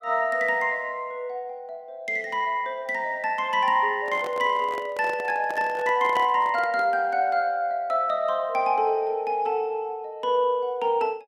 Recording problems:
handling noise; from 4 to 7 s; peak -5 dB vs average level

